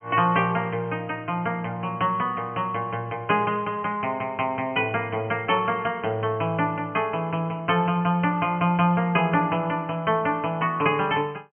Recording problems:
low-pass filter; nothing above 3.2 kHz

